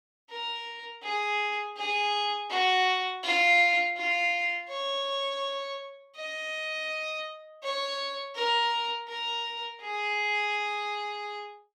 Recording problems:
none

